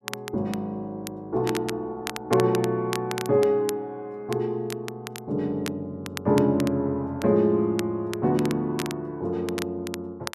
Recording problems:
crackling; vinyl, SNR 13 dB

